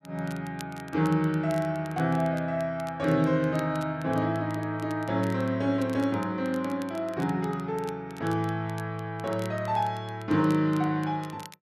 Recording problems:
crackling; vinyl, SNR 23 dB

